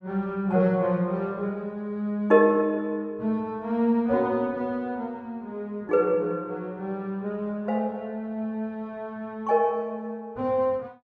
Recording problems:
none

